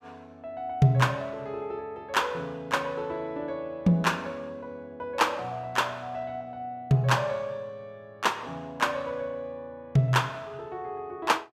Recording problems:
none

